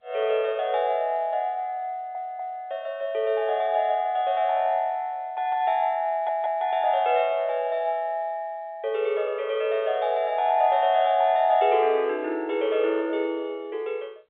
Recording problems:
phone line; 320 Hz to 3.9 kHz, G.711
audio stuttering; at 2 s and at 6 s

